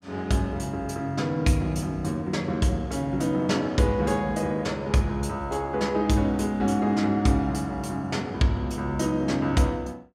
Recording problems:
none

